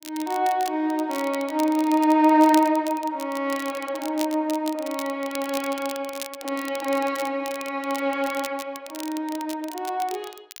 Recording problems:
crackle; vinyl, SNR 15 dB

